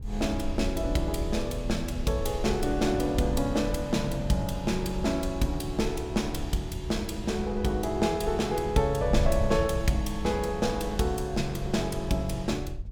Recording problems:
wind noise; below 76 Hz, SNR 8 dB

